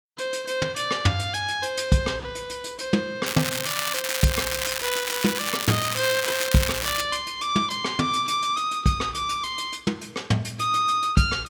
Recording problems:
crackle; from 3.5 to 7 s; loose cable, SNR 2 dB

